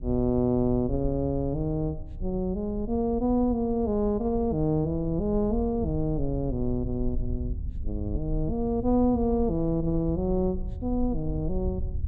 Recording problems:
low-frequency rumble; below 70 Hz, SNR 9 dB

